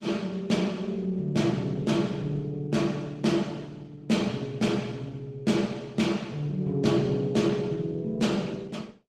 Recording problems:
lossy codec; Opus, log-spectral distance 3 dB, nothing above 16.6 kHz

